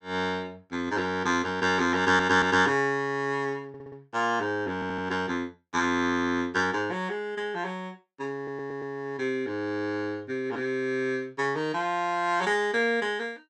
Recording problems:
stutter; 4 times, first at 2 s

